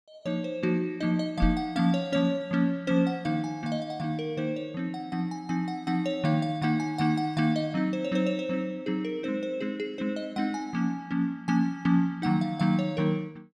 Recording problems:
microphone thump; at 1.5 s; peak +4 dB vs average level

